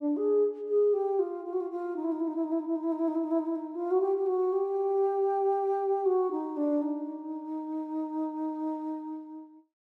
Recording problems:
none

